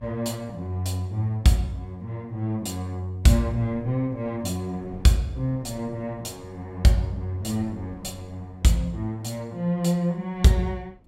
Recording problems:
wind noise; below 240 Hz, SNR 23 dB

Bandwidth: 16 kHz